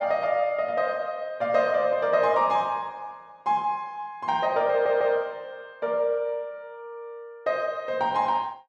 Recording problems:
audio stuttering; at 4.5 s

